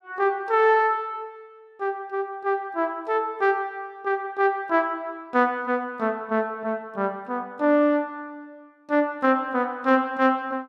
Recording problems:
none

